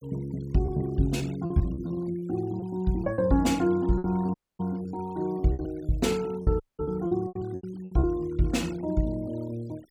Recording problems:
noise reduction artefacts; signal-to-artefact ratio 24 dB
packet loss; 10% of the sound replaced, filled with repeated pitch periods
audio cutting out; at 4.5 s and at 6.5 s

